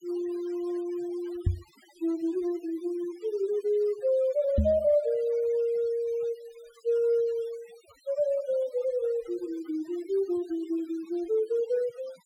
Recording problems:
denoising artefacts; signal-to-artefact ratio 25 dB
microphone thump; at 1.5 s and at 4.5 s; peak +7 dB vs average level

